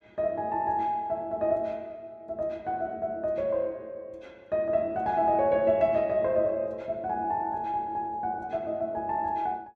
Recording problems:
none

